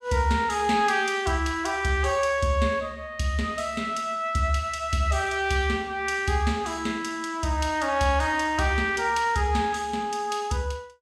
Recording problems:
none

